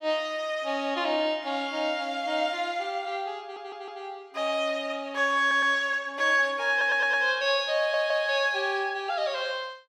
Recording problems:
stutter; 4 times, first at 3.5 s

